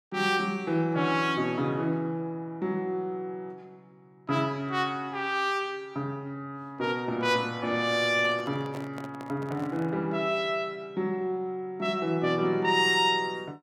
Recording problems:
microphone handling noise; from 8 to 10 s; peak -9 dB vs average level

